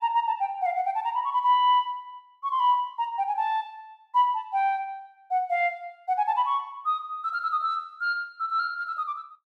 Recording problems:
none

